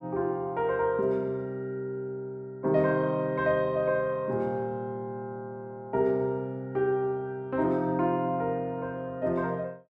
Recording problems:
none

